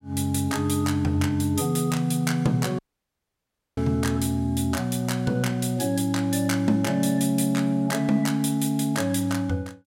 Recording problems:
dropout; at 3 s for 1 s

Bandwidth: 16 kHz